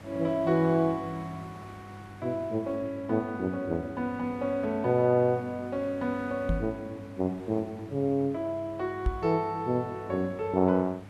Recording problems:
electrical hum; 50 Hz, harmonics up to 500 Hz, SNR 18 dB
background hiss; SNR 22 dB
microphone bump; at 6.5 s and at 9 s; peak +4 dB vs average level

